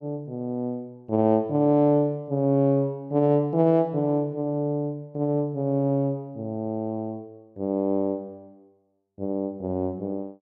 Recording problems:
none

